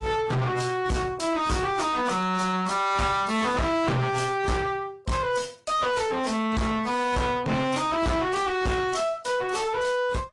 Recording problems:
codec artefacts; AAC, then AAC, log-spectral distance 3 dB, nothing above 10.4 kHz
distorted audio; soft clipping, signal-to-distortion ratio 6 dB

